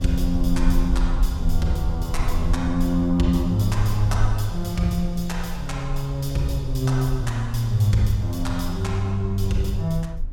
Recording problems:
low-frequency rumble; below 50 Hz, SNR 6 dB

